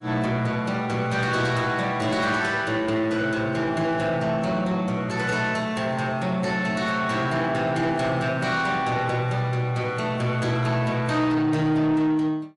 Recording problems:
lossy codec; MP3, log-spectral distance 2 dB, nothing above 11 kHz
distorted audio; soft clipping, signal-to-distortion ratio 12 dB

